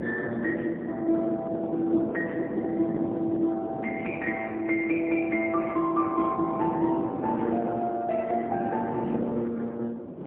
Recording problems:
telephone audio; 170 Hz to 3.6 kHz, AMR-NB, then MP3
wind on the microphone; below 450 Hz, SNR 7 dB

